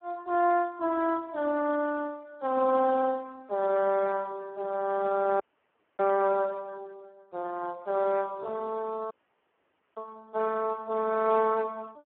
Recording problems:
phone line; 240 Hz to 2.1 kHz, Speex
audio cutting out; at 5.5 s for 0.5 s and at 9 s for 1 s

